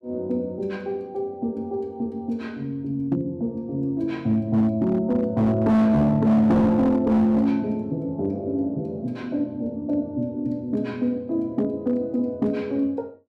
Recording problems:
distortion; hard clipping, signal-to-distortion ratio 11 dB

